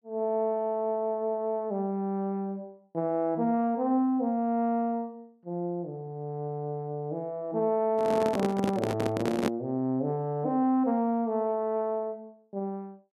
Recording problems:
handling noise; from 8 to 9.5 s; peak +5 dB vs average level

